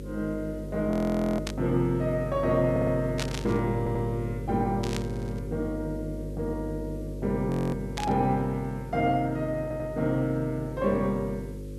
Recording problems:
hum; 50 Hz, harmonics up to 550 Hz, SNR 9 dB
background hiss; slope -1 dB per octave, SNR 29 dB
audio freezing; at 1 s and at 7.5 s
burst of static; 4 times, first at 1.5 s; peak 0 dB vs average level
stutter; 4 times, first at 2.5 s

